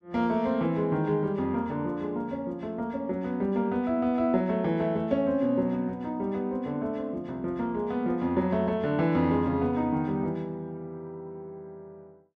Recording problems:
none

